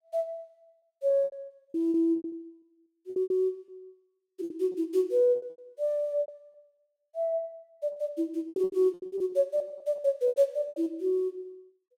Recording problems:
packet loss; 17% of the sound replaced, filled with repeated pitch periods

